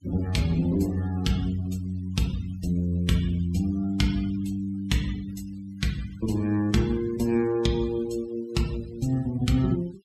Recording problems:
denoising artefacts; signal-to-artefact ratio 20 dB

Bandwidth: 14.5 kHz